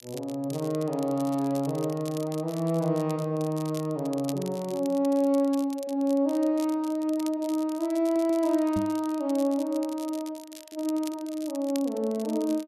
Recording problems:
crackle; vinyl, SNR 19 dB
stutter; at 8 s
knock on the microphone; at 9 s; peak -1 dB vs average level

